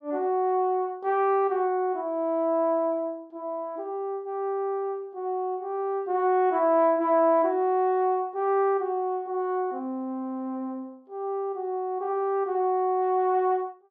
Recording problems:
none

